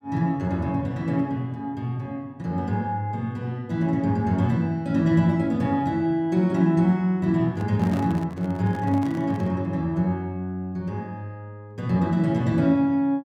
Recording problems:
microphone handling noise; from 7.5 to 9.5 s; peak -7 dB vs average level

